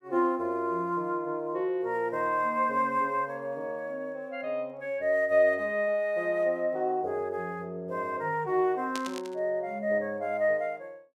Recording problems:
static burst; at 9 s; peak -4 dB vs average level

